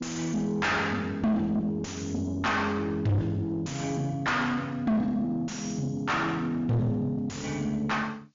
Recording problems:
low-pass filter; nothing above 7.1 kHz
codec artefacts; G.722, log-spectral distance 3 dB
distortion; soft clipping, signal-to-distortion ratio 5 dB

